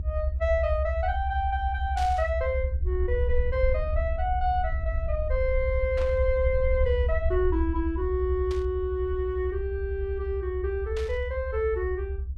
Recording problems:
low-frequency rumble; below 74 Hz, SNR 2 dB
burst of static; 4 times, first at 2 s; peak -8 dB vs average level

